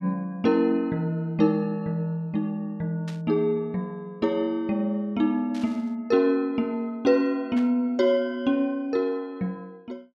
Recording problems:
static burst; at 3 s, at 5.5 s and at 7.5 s; peak -13 dB vs average level

